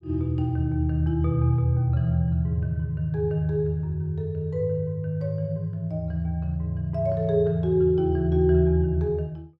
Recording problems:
none

